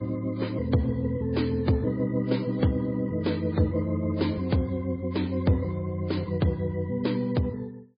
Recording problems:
lossy compression; MP3, then MP3, log-spectral distance 2 dB, nothing above 4.9 kHz

